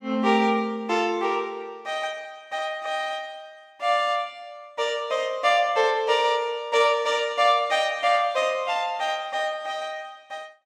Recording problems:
none

